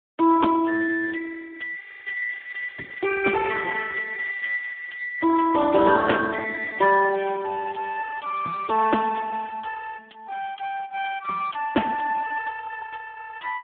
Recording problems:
telephone audio; 240 Hz to 2.3 kHz, Speex
crackle; from 2.5 to 4.5 s and from 7 to 9.5 s; loose cable, SNR 27 dB

